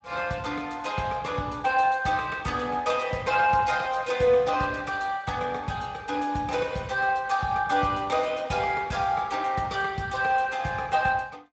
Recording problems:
codec artefacts; Speex, log-spectral distance 4 dB, nothing above 7.6 kHz

